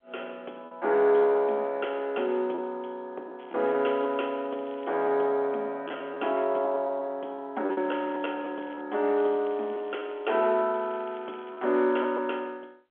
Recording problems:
telephone audio; 300 Hz to 3.4 kHz, G.711
packet loss; 4% of the sound replaced, filled with repeated pitch periods
crackle; from 3.5 to 5 s, from 7.5 to 9 s and from 9 to 12 s; loose cable, SNR 28 dB

